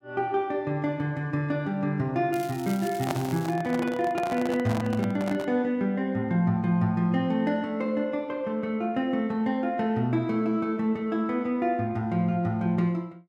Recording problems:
crackle; from 2.5 to 3.5 s; loose cable, SNR 17 dB
handling noise; from 3 to 5.5 s; peak 0 dB vs average level

